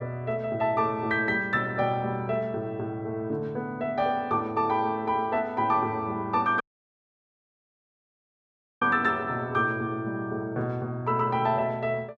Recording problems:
dropout; at 6.5 s for 2 s

